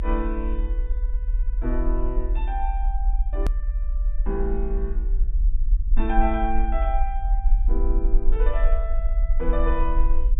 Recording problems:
treble cut off; nothing above 4 kHz
low-frequency rumble; below 40 Hz, SNR -5 dB
edit click; at 3.5 s

